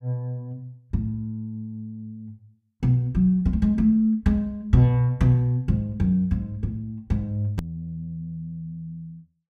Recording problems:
hard cut with a click; at 7.5 s

